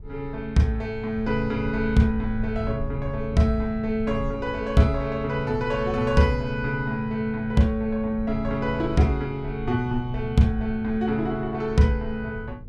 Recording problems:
low-frequency rumble; below 82 Hz, SNR 13 dB

